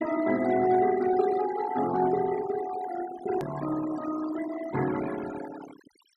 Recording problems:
noise reduction artefacts; signal-to-artefact ratio 12 dB
edit click; at 3.5 s

